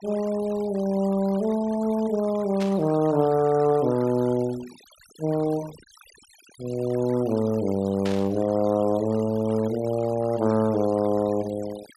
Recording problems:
noise reduction artefacts; signal-to-artefact ratio 21 dB
burst of static; at 2.5 s and at 8 s; peak -7 dB vs average level

